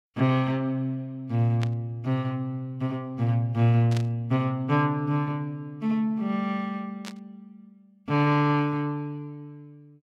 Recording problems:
static burst; at 1.5 s, at 4 s and at 7 s; peak -6 dB vs average level

